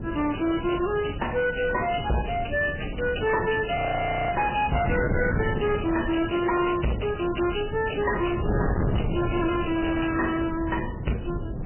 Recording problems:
lossy compression; MP3, log-spectral distance 8 dB, nothing above 3 kHz
distortion; hard clipping, signal-to-distortion ratio 7 dB
wind noise; below 330 Hz, SNR 6 dB
audio freezing; at 4 s for 0.5 s

